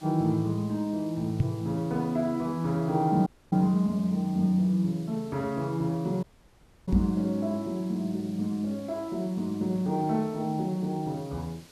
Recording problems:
hiss; slope -2 dB per octave, SNR 24 dB
microphone bump; at 1.5 s and at 7 s; peak +7 dB vs average level
dropout; at 3.5 s and at 6 s for 0.5 s

